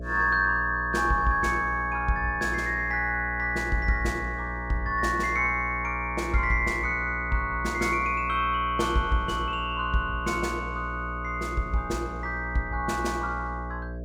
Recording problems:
hum; 60 Hz, harmonics up to 660 Hz, SNR 10 dB

